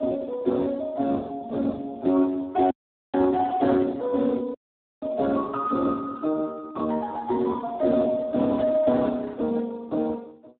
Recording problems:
telephone audio; 220 Hz to 3 kHz, Speex
audio cutting out; at 2.5 s and at 4.5 s

